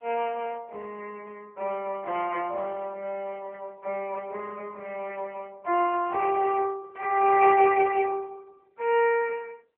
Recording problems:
telephone audio; 300 Hz to 3.9 kHz, AMR-NB

